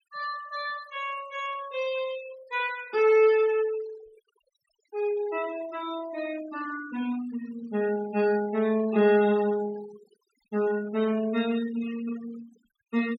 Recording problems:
noise reduction artefacts; signal-to-artefact ratio 19 dB

